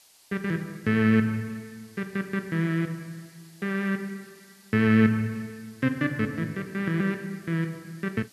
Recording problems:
hiss; slope +2 dB per octave, SNR 27 dB

